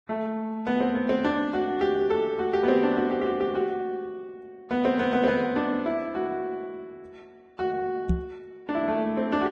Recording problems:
codec artefacts; Vorbis, log-spectral distance 2 dB
microphone thump; at 8 s; peak +5 dB vs average level

